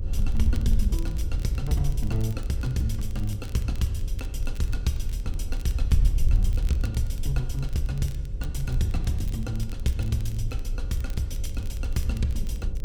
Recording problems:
electrical hum; 60 Hz, harmonics up to 540 Hz, SNR 13 dB
wind on the microphone; below 60 Hz, SNR 0 dB
crackling; vinyl, SNR 21 dB

